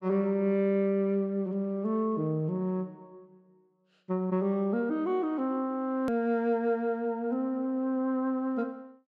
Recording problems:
edit click; at 6 s

